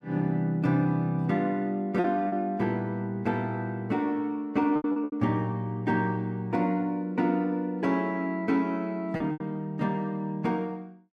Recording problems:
lost packets; 4% of the sound replaced, filled with repeated pitch periods

